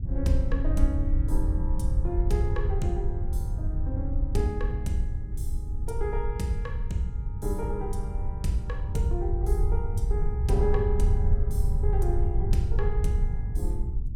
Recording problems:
low-frequency rumble; below 74 Hz, SNR -4 dB

